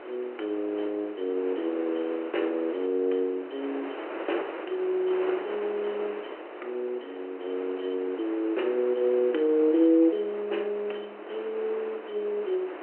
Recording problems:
phone line; 300 Hz to 3.4 kHz, G.726
wind on the microphone; below 1.2 kHz, SNR 11 dB

